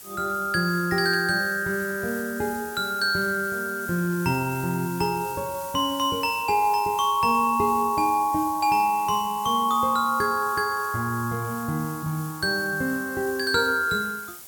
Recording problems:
hiss; SNR 15 dB

